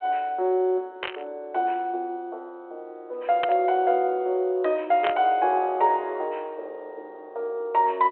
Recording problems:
telephone audio; 320 Hz to 3.6 kHz, G.726
burst of static; at 1 s, at 3.5 s and at 5 s; peak 0 dB vs average level

